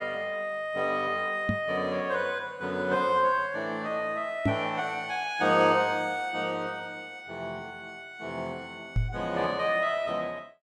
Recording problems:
knock on the microphone; at 1.5 s, at 4.5 s and at 9 s; peak +6 dB vs average level

